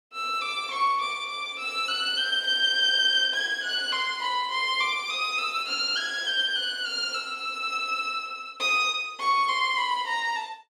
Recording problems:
none

